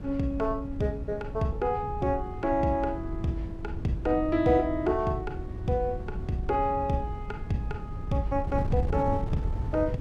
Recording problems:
wind noise; below 130 Hz, SNR 7 dB

